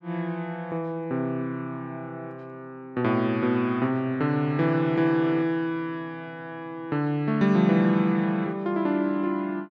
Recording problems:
none

